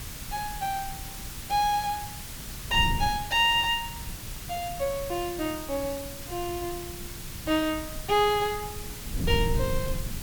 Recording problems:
background hiss; slope 0 dB per octave, SNR 11 dB
wind on the microphone; below 140 Hz, SNR 10 dB

